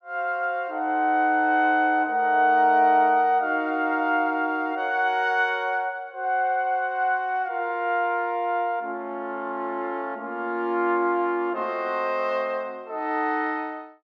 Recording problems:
none

